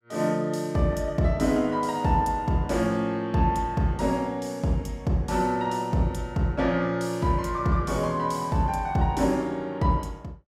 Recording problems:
none

